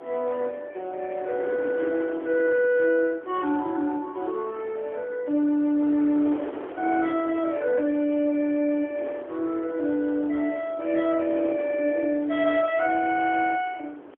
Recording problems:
phone line; 240 Hz to 3.7 kHz, AMR-NB, then MP3
wind noise; below 700 Hz, SNR 16 dB

